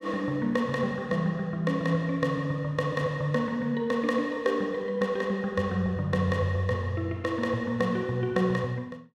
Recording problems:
none

